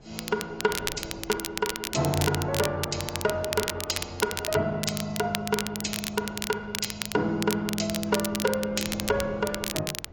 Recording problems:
lossy compression; AAC, log-spectral distance 3 dB
wind on the microphone; below 580 Hz, SNR 18 dB
crackling; vinyl, SNR 4 dB

